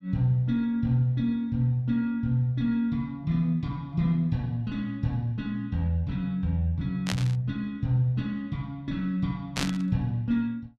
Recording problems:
static burst; at 7 s and at 9.5 s; peak +2 dB vs average level

